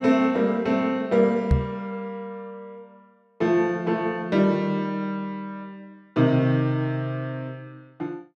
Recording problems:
knock on the microphone; at 1.5 s; peak +7 dB vs average level

